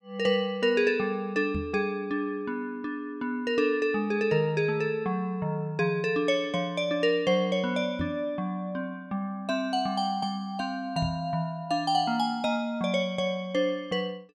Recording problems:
microphone bump; at 1.5 s, at 8 s and at 11 s; peak -1 dB vs average level

